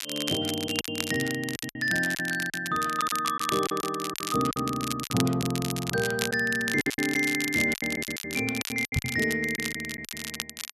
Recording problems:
crackling; vinyl, SNR 7 dB
lost packets; 13% of the sound replaced, filled with silence
microphone bump; at 9 s; peak +3 dB vs average level

